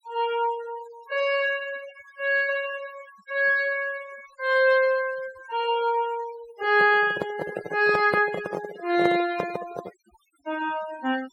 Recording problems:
denoising artefacts; signal-to-artefact ratio 18 dB
handling noise; from 6.5 to 10 s; peak +2 dB vs average level

